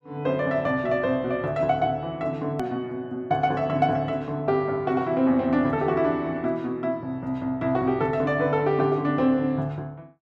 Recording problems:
edit click; at 2.5 s

